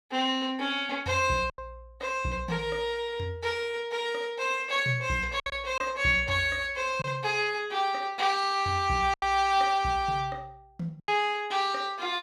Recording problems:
lost packets; 3% of the sound replaced, filled with silence

